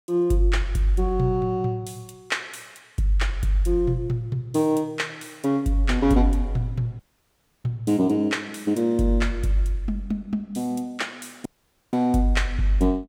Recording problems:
dropout; at 7 s for 0.5 s and at 11 s

